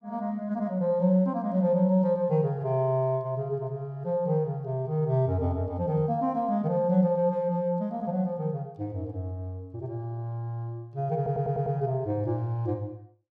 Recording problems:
stutter; at 11 s

